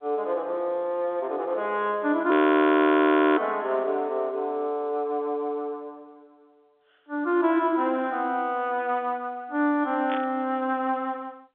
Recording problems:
telephone audio; 260 Hz to 3.6 kHz, G.711
frozen audio; at 2.5 s for 1 s
burst of static; at 10 s; peak -7 dB vs average level

